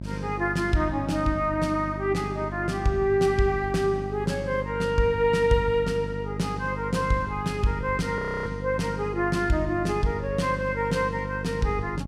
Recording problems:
hum; 50 Hz, harmonics up to 650 Hz, SNR 9 dB
frozen audio; at 8 s

